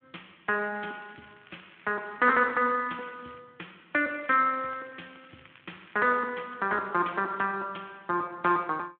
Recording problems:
phone line; 260 Hz to 3.5 kHz, Speex
crackle; from 0.5 to 3.5 s and from 4 to 6.5 s; loose cable, SNR 27 dB

